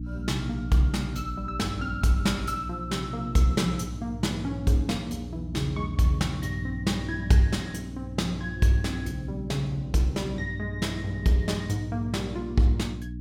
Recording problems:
electrical hum; 60 Hz, harmonics up to 300 Hz, SNR 9 dB

